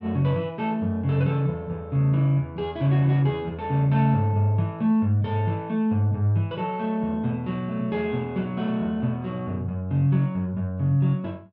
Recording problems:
none

